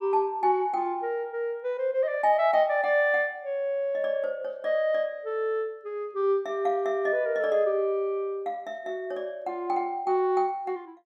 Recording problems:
none

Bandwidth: 14 kHz